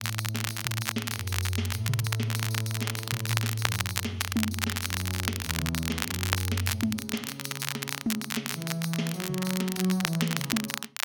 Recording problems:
crackle; vinyl, SNR 1 dB

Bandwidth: 17 kHz